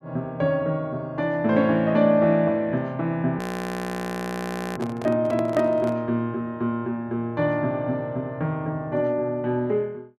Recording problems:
frozen audio; at 3.5 s for 1.5 s
handling noise; from 5 to 6 s; peak -6 dB vs average level

